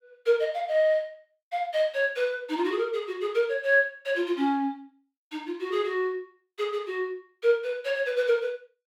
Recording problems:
none

